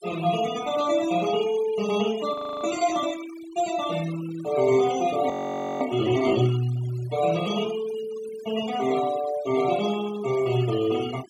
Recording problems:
noise reduction artefacts; signal-to-artefact ratio 14 dB
audio freezing; at 2.5 s and at 5.5 s for 0.5 s

